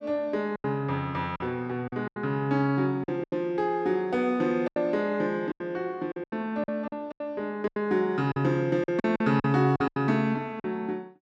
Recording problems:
packet loss; 11% of the sound replaced, filled with silence

